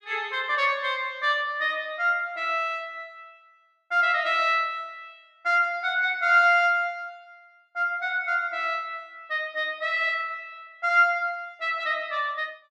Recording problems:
none

